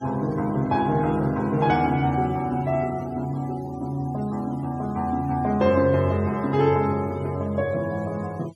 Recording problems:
denoising artefacts; signal-to-artefact ratio 23 dB

